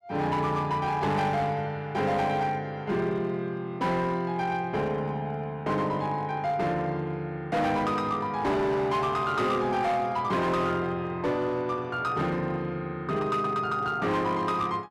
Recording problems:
distorted audio; hard clipping, signal-to-distortion ratio 11 dB

